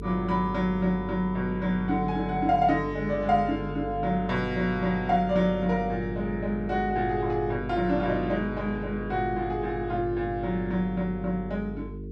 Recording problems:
electrical hum; 50 Hz, harmonics up to 450 Hz, SNR 10 dB

